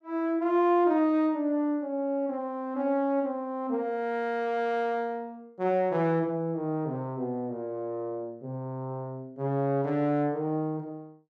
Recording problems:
none

